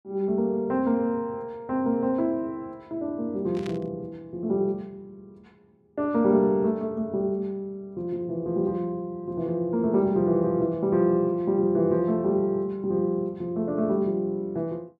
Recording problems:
burst of static; at 3.5 s; peak -11 dB vs average level

